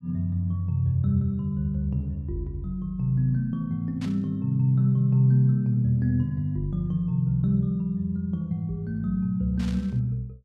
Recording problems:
burst of static; at 4 s and at 9.5 s; peak -13 dB vs average level

